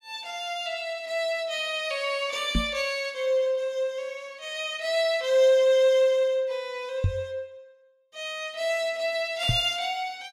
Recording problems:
microphone thump; at 2.5 s, at 7 s and at 9.5 s; peak +4 dB vs average level

